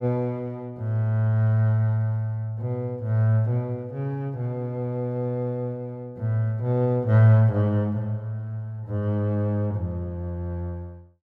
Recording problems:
none

